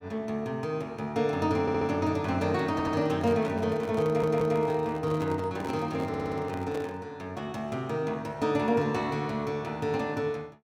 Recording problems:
audio stuttering; 4 times, first at 1.5 s
handling noise; from 3 to 7 s; peak -5 dB vs average level

